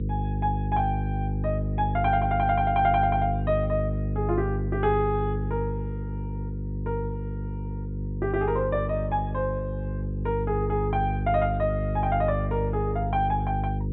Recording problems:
treble cut off; nothing above 3.9 kHz
electrical hum; 50 Hz, harmonics up to 500 Hz, SNR 2 dB

